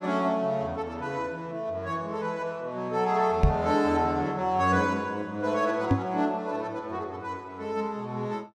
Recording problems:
microphone bump; at 3.5 s and at 6 s; peak +9 dB vs average level

